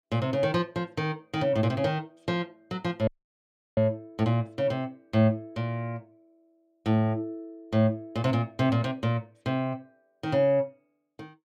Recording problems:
dropout; at 3 s for 0.5 s

